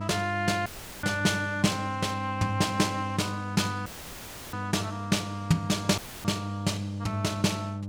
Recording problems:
electrical hum; 50 Hz, harmonics up to 900 Hz, SNR 7 dB
audio cutting out; at 0.5 s, at 4 s for 0.5 s and at 6 s; filled with static

